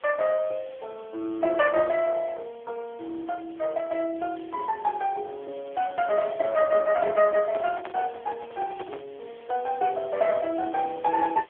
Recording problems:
telephone audio; 280 Hz to 2.5 kHz, AMR-NB
background hiss; SNR 27 dB
microphone handling noise; from 7 to 9 s; peak -8 dB vs average level

